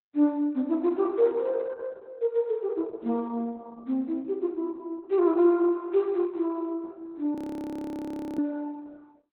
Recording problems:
codec artefacts; Opus, log-spectral distance 2 dB, nothing above 18.9 kHz
audio freezing; at 7.5 s for 1 s

